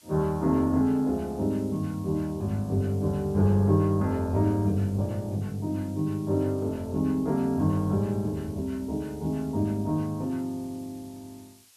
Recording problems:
hiss; slope +3 dB per octave, SNR 27 dB

